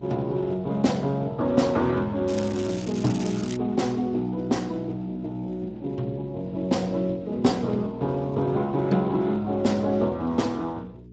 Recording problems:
codec artefacts; MP2, then Speex, log-spectral distance 3 dB, nothing above 7.6 kHz
hum; 60 Hz, harmonics up to 420 Hz, SNR 22 dB
crackling; from 2.5 to 3.5 s; loose cable, SNR 15 dB

